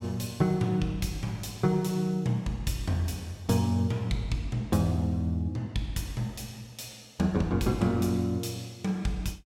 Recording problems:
none

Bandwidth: 16.5 kHz